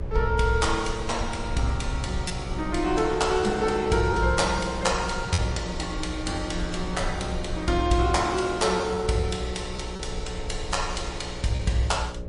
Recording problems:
lossy codec; MP3, log-spectral distance 3 dB, nothing above 10.4 kHz
hum; 60 Hz, harmonics up to 600 Hz, SNR 13 dB
low-frequency rumble; below 70 Hz, SNR 12 dB
lost packets; 2% of the sound replaced, filled with repeated pitch periods

